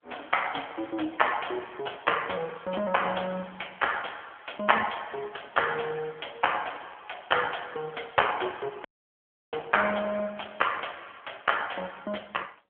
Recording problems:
phone line; 260 Hz to 3.3 kHz, AMR-NB
dropout; at 9 s for 0.5 s

